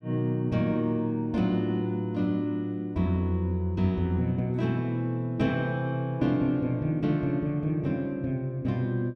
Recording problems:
none

